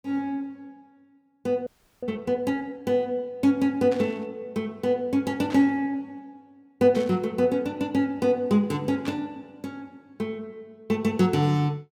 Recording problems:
audio freezing; at 1.5 s
burst of static; 4 times, first at 4 s; peak -9 dB vs average level

